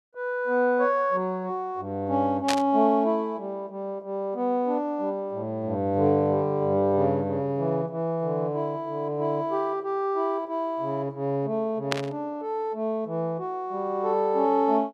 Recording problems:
burst of static; at 2.5 s and at 12 s; peak +4 dB vs average level

